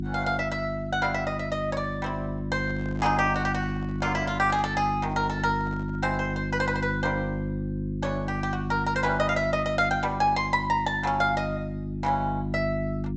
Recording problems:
treble missing; nothing above 8 kHz
electrical hum; 50 Hz, harmonics up to 350 Hz, SNR 4 dB
handling noise; from 2.5 to 6.5 s; peak -12 dB vs average level

